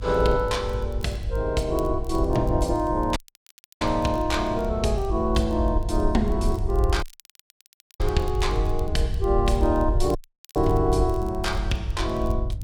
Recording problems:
hum; 50 Hz, harmonics up to 500 Hz, SNR 16 dB
rumble; below 68 Hz, SNR 4 dB
crackling; vinyl, SNR 27 dB
audio cutting out; at 3 s for 0.5 s, at 7 s for 1 s and at 10 s

